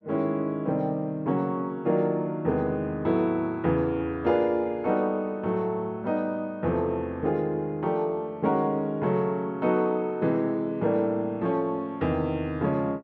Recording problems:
none

